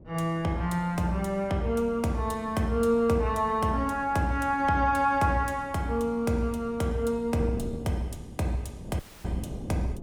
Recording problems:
wind noise; below 300 Hz, SNR 16 dB
audio cutting out; at 9 s

